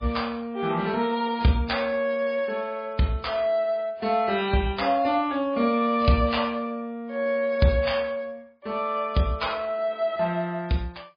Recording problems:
codec artefacts; MP3, log-spectral distance 2 dB, nothing above 5 kHz

